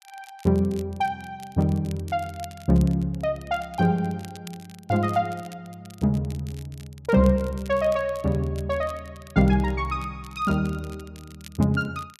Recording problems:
crackle; vinyl, SNR 24 dB

